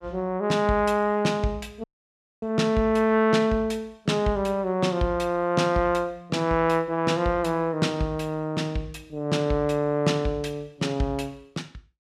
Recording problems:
audio cutting out; at 2 s for 0.5 s

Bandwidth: 15 kHz